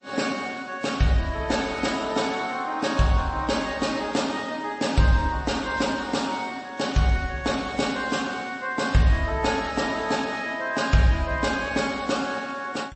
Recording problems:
lossy compression; MP3, then MP3, log-spectral distance 4 dB, nothing above 8 kHz

